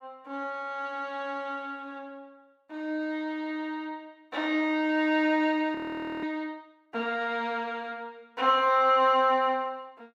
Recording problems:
audio freezing; at 6 s

